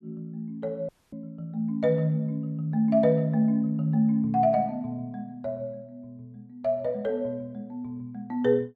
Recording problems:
audio cutting out; at 1 s

